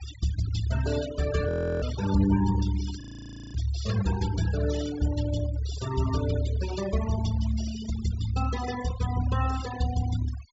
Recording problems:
treble missing; nothing above 8 kHz
denoising artefacts; signal-to-artefact ratio 12 dB
frozen audio; at 1.5 s and at 3 s for 0.5 s

